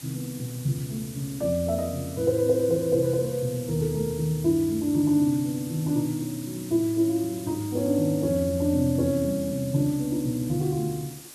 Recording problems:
hiss; SNR 16 dB

